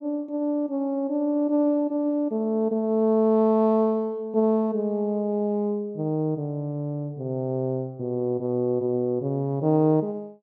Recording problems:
none

